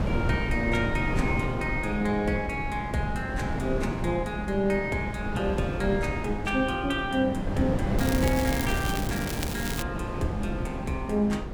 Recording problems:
wind noise; below 310 Hz, SNR 3 dB
crackling; from 8 to 10 s; loose cable, SNR 7 dB

